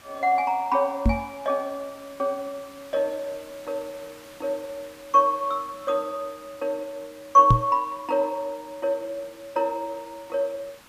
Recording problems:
hiss; SNR 23 dB
microphone thump; at 1 s and at 7.5 s; peak +9 dB vs average level

